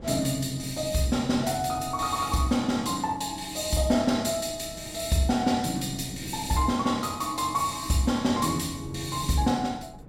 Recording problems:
wind on the microphone; below 280 Hz, SNR 18 dB

